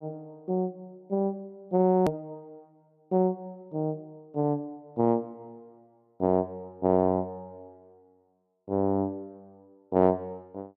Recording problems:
click at an edit; at 2 s

